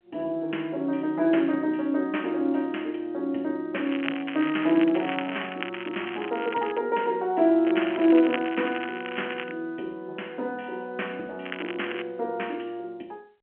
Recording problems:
telephone audio; 240 Hz to 3.1 kHz, G.711
crackling; from 4 to 7 s, from 7.5 to 9.5 s and at 11 s; loose cable, SNR 10 dB

